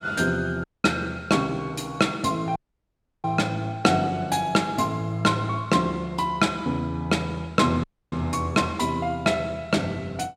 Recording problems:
dropout; at 0.5 s, at 2.5 s for 0.5 s and at 8 s

